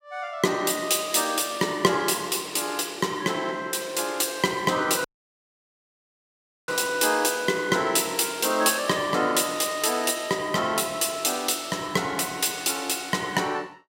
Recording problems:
audio cutting out; at 5 s for 1.5 s

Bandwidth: 16 kHz